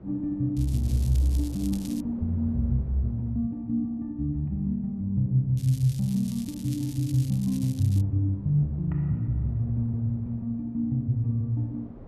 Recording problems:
wind noise; below 350 Hz, SNR 22 dB
crackling; from 0.5 to 2 s and from 5.5 to 8 s; loose cable, SNR 19 dB

